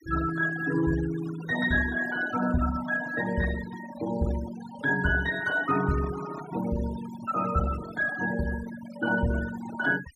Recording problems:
denoising artefacts; signal-to-artefact ratio 12 dB

